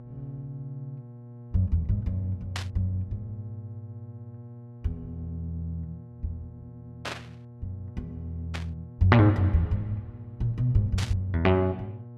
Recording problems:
hum; 60 Hz, harmonics up to 840 Hz, SNR 17 dB
static burst; 4 times, first at 2.5 s; peak -1 dB vs average level

